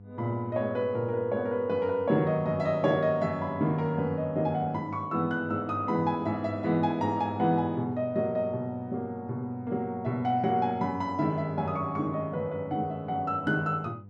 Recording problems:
electrical hum; 50 Hz, harmonics up to 700 Hz, SNR 18 dB

